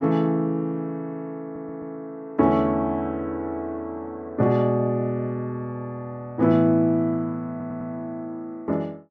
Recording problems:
stutter; at 1.5 s and at 7.5 s

